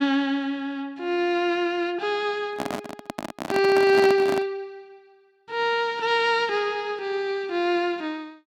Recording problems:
microphone handling noise; from 2.5 to 4.5 s; peak -1 dB vs average level

